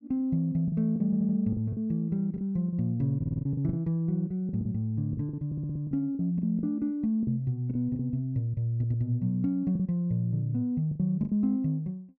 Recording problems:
lost packets; 9% of the sound replaced, filled with the last packet
audio stuttering; 4 times, first at 1 s

